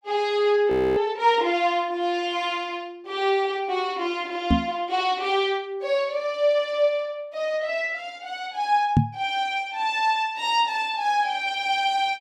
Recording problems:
frozen audio; at 0.5 s
microphone bump; at 4.5 s and at 9 s; peak +9 dB vs average level

